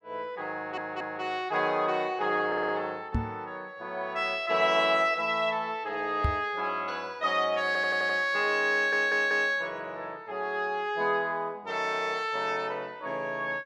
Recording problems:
stutter; 4 times, first at 0.5 s
microphone thump; at 3 s and at 6 s; peak +4 dB vs average level

